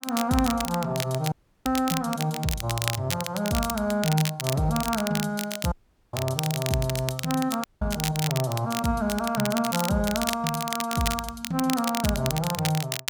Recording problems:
crackling; vinyl, SNR 6 dB
audio cutting out; at 1.5 s, at 5.5 s and at 7.5 s

